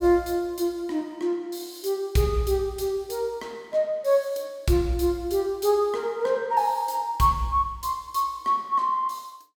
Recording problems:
none

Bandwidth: 17.5 kHz